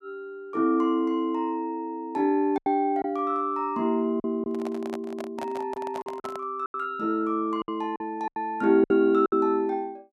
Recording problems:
lost packets; 6% of the sound replaced, filled with silence
handling noise; from 4.5 to 6.5 s; peak -6 dB vs average level

